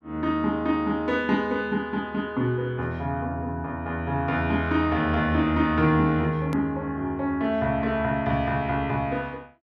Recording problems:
edit click; at 6.5 s

